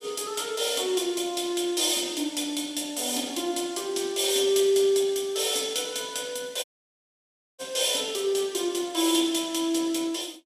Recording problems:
audio cutting out; at 6.5 s for 1 s

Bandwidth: 15 kHz